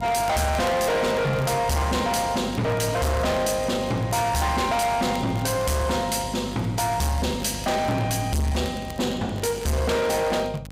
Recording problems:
distortion; hard clipping, uneven, signal-to-distortion ratio 6 dB
hum; 50 Hz, harmonics up to 800 Hz, SNR 15 dB
crackle; vinyl, SNR 22 dB

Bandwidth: 15.5 kHz